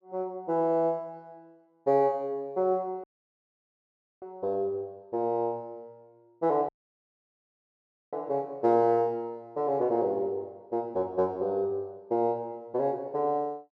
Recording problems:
audio cutting out; at 3 s for 1 s and at 6.5 s for 1.5 s

